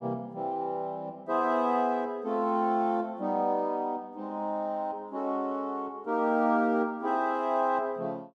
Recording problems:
none

